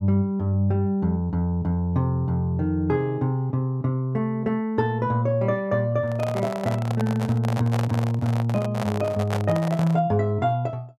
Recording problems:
microphone handling noise; from 6 to 10 s; peak -2 dB vs average level

